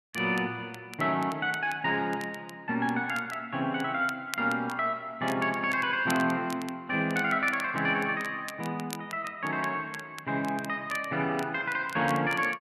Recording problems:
crackle; vinyl, SNR 18 dB

